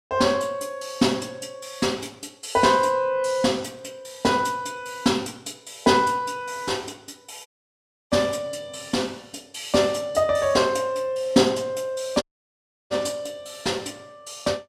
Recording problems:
audio cutting out; at 7.5 s for 0.5 s and at 12 s for 0.5 s

